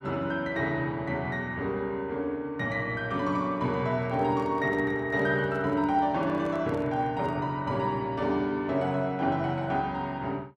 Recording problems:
handling noise; from 4 to 7.5 s; peak -11 dB vs average level

